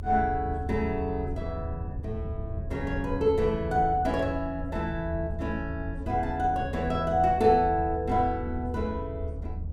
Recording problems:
low-frequency rumble; below 88 Hz, strongest tone 78 Hz, SNR 8 dB

